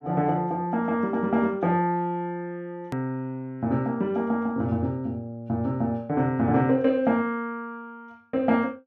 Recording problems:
hard cut with a click; at 3 s

